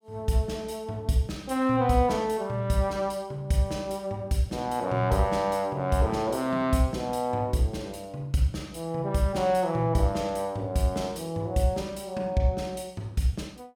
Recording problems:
none

